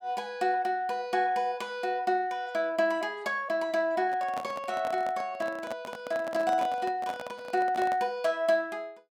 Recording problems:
microphone handling noise; from 4 to 8 s; peak -4 dB vs average level

